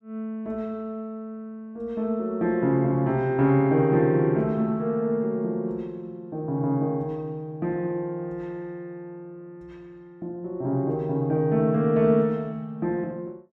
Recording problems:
none

